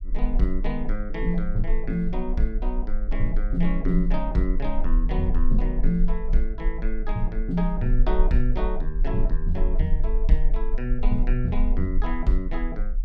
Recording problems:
low-frequency rumble; below 34 Hz, strongest tone 22 Hz, SNR 0 dB

